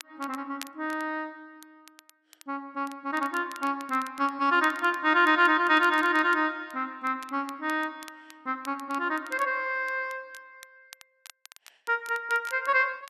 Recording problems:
crackling; vinyl, SNR 23 dB

